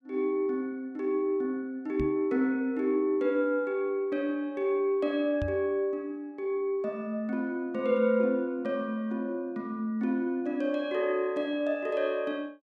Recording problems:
knock on the microphone; at 2 s and at 5.5 s; peak -1 dB vs average level

